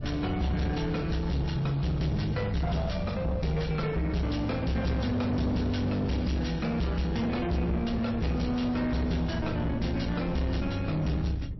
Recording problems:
codec artefacts; MP3, log-spectral distance 3 dB, nothing above 5.7 kHz
distorted audio; soft clipping, signal-to-distortion ratio 7 dB
wind noise; below 170 Hz, SNR 11 dB

